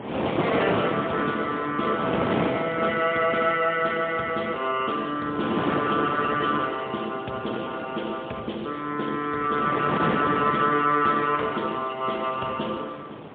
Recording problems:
telephone audio; 130 Hz to 3.5 kHz, AMR-NB, then MP3
wind noise; below 930 Hz, SNR 5 dB

